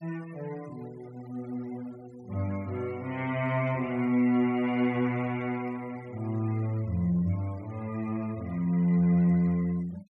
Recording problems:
noise reduction artefacts; signal-to-artefact ratio 24 dB

